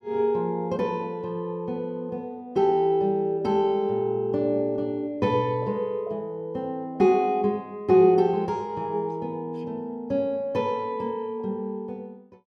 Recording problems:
none

